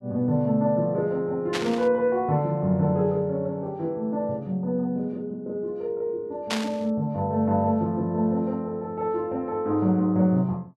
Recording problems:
static burst; at 1.5 s and at 6.5 s; peak +1 dB vs average level

